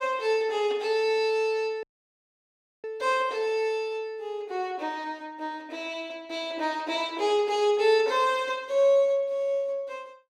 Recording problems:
audio cutting out; at 2 s for 1 s

